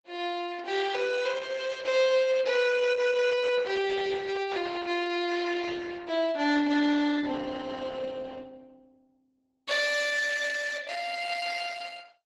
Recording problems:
codec artefacts; Opus, log-spectral distance 5 dB, nothing above 12 kHz

